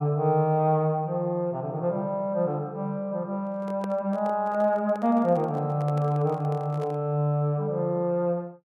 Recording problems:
handling noise; from 3.5 to 7 s; peak -8 dB vs average level

